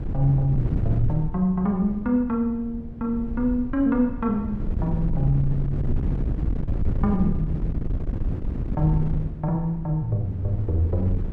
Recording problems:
wind on the microphone; below 130 Hz, SNR 5 dB

